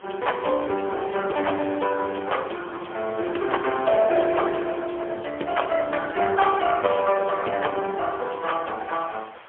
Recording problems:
telephone audio; 260 Hz to 3.3 kHz, AMR-NB, then MP3
hiss; SNR 21 dB

